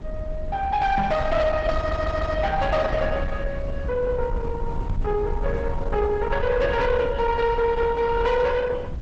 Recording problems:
lossy compression; Opus, log-spectral distance 2 dB, nothing above 7.3 kHz
distorted audio; soft clipping, signal-to-distortion ratio 11 dB
low-frequency rumble; below 92 Hz, SNR 7 dB
microphone thump; at 1 s and at 5 s; peak 0 dB vs average level
stutter; at 2 s

